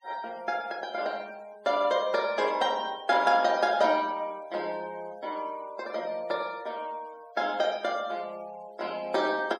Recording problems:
denoising artefacts; signal-to-artefact ratio 25 dB

